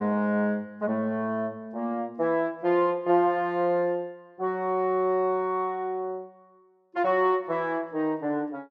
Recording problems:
none

